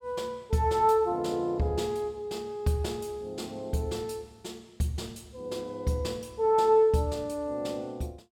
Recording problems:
none

